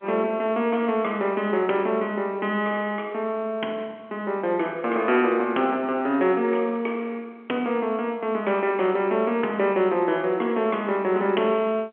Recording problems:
telephone audio; 240 Hz to 3.4 kHz, G.711

